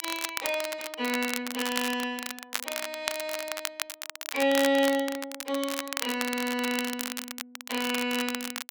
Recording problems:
crackle; vinyl, SNR 5 dB

